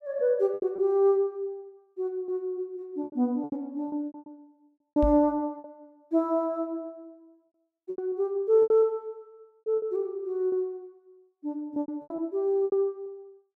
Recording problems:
packet loss; 11% of the sound replaced, filled with repeated pitch periods
microphone bump; at 5 s; peak +1 dB vs average level

